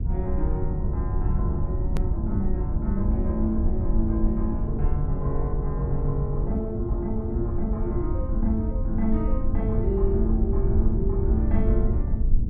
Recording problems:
low-frequency rumble; below 80 Hz, SNR -2 dB
click at an edit; at 2 s

